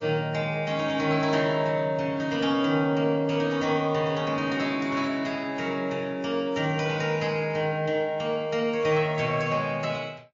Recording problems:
lossy codec; MP3, log-spectral distance 2 dB

